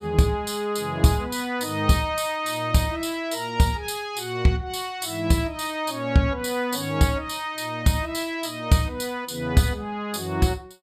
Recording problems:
none

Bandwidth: 14.5 kHz